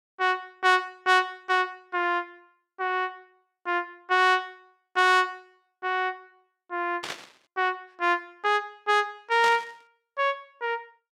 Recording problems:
static burst; at 7 s and at 9.5 s; peak -3 dB vs average level

